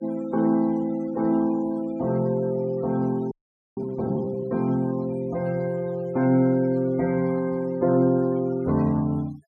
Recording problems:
denoising artefacts; signal-to-artefact ratio 23 dB
frozen audio; at 3.5 s

